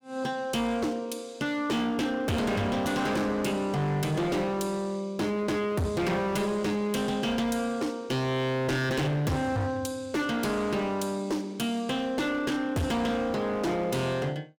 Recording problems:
distorted audio; hard clipping, signal-to-distortion ratio 7 dB

